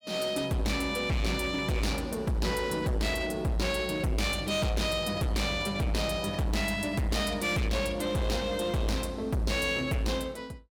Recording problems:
distortion; hard clipping, signal-to-distortion ratio 8 dB

